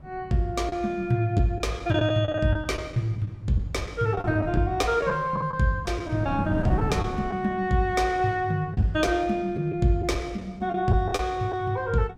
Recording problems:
wind on the microphone; below 210 Hz, SNR 13 dB
packet loss; 6% of the sound replaced, filled with the last packet

